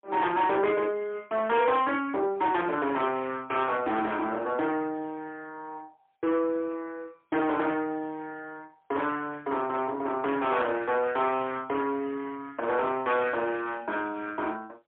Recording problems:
telephone audio; 280 Hz to 3.6 kHz, AMR-NB, then MP3
distortion; soft clipping, signal-to-distortion ratio 10 dB

